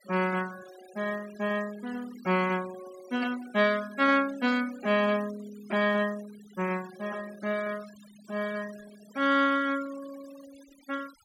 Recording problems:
noise reduction artefacts; signal-to-artefact ratio 20 dB

